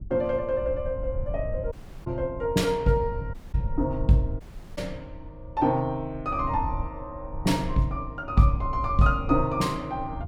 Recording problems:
low-frequency rumble; below 84 Hz, SNR 11 dB
audio cutting out; at 1.5 s, at 3.5 s and at 4.5 s

